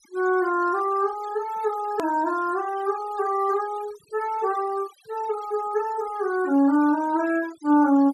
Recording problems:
noise reduction artefacts; signal-to-artefact ratio 19 dB
edit click; at 2 s

